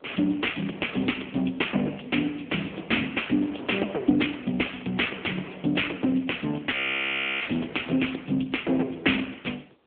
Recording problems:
telephone audio; 260 Hz to 3.7 kHz, AMR-NB
wind noise; below 770 Hz, SNR 19 dB
audio freezing; at 6.5 s for 0.5 s

